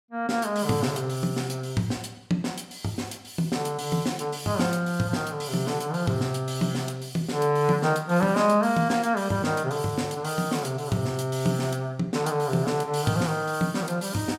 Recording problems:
none

